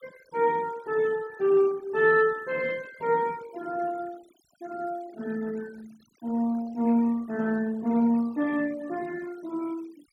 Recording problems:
noise reduction artefacts; signal-to-artefact ratio 23 dB

